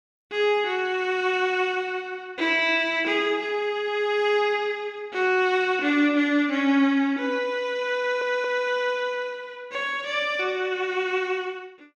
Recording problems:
stutter; at 8 s

